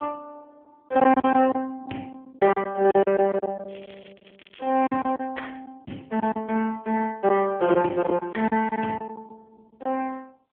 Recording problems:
phone line; 150 Hz to 3.3 kHz, AMR-NB
lost packets; 8% of the sound replaced, filled with silence
crackle; from 3.5 to 5 s; loose cable, SNR 28 dB

